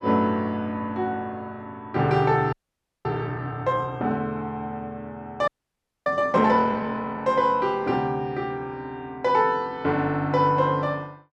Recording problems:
frozen audio; at 2.5 s for 0.5 s and at 5.5 s for 0.5 s

